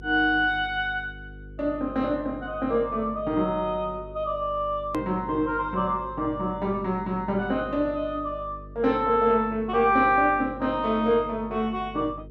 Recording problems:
electrical hum; 50 Hz, harmonics up to 500 Hz, SNR 18 dB
click at an edit; at 5 s

